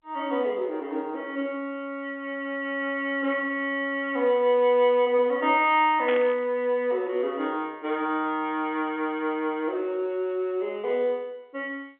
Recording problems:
phone line; 220 Hz to 3.4 kHz, G.711
static burst; at 6 s; peak -4 dB vs average level

